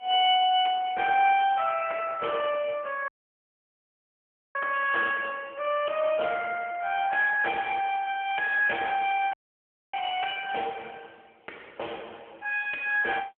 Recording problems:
phone line; 370 Hz to 3.1 kHz, AMR-NB
dropout; at 3 s for 1.5 s and at 9.5 s for 0.5 s

